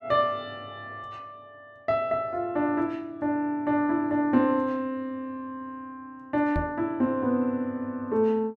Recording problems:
microphone thump; at 6.5 s; peak -1 dB vs average level

